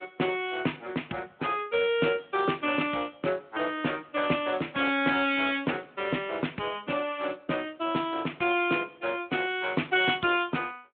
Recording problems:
phone line; 240 Hz to 3.5 kHz, Speex

